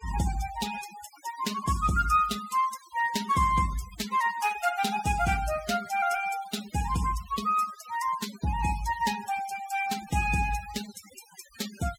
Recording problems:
noise reduction artefacts; signal-to-artefact ratio 14 dB

